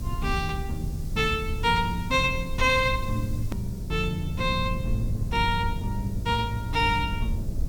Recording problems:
hum; 60 Hz, harmonics up to 660 Hz, SNR 18 dB
background hiss; SNR 23 dB
low-frequency rumble; below 100 Hz, SNR 7 dB
hard cut with a click; at 3.5 s

